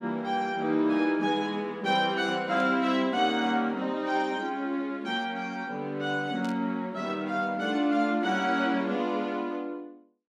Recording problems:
static burst; at 2.5 s and at 6.5 s; peak -13 dB vs average level

